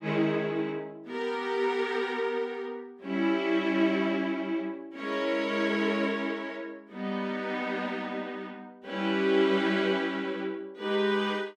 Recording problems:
none

